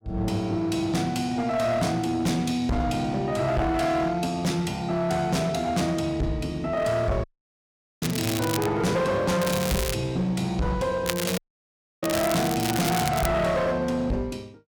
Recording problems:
distortion; hard clipping, uneven, signal-to-distortion ratio 7 dB
dropout; at 7 s for 1 s and at 11 s for 0.5 s
crackling; at 8 s, at 9.5 s and from 11 to 13 s; loose cable, SNR 7 dB

